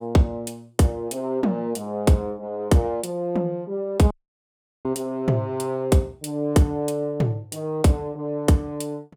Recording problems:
audio cutting out; at 4 s for 0.5 s

